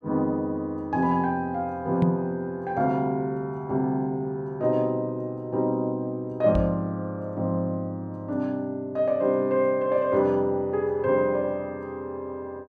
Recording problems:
microphone bump; at 2 s and at 6.5 s; peak +5 dB vs average level

